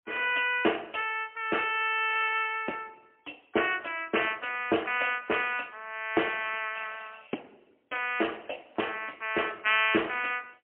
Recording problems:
telephone audio; 240 Hz to 3.2 kHz, AMR-NB, then MP3

